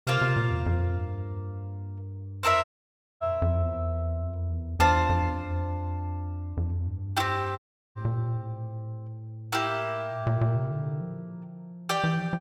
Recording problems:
dropout; at 2.5 s for 0.5 s and at 7.5 s

